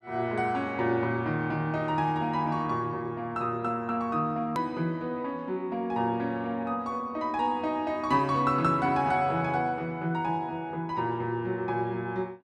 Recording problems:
edit click; at 4.5 s

